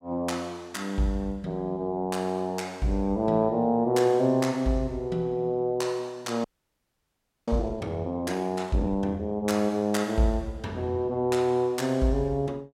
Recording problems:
frozen audio; at 6.5 s for 1 s

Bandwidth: 16.5 kHz